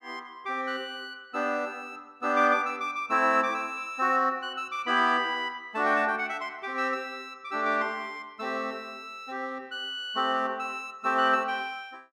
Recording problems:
none

